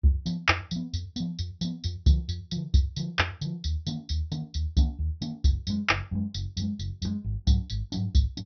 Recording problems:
treble cut off; nothing above 6.1 kHz

